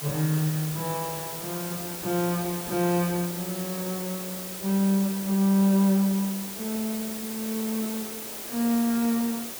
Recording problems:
hiss; slope -3 dB per octave, SNR 7 dB

